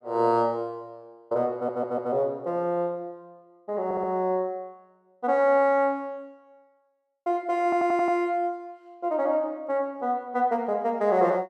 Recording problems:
audio stuttering; at 1.5 s, at 4 s and at 7.5 s

